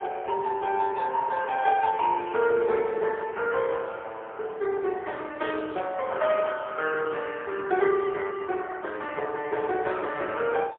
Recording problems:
telephone audio; 320 Hz to 3.2 kHz, AMR-NB, then MP3

